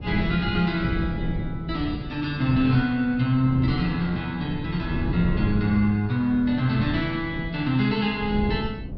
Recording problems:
treble missing; nothing above 5.7 kHz
wind noise; below 210 Hz, SNR 8 dB

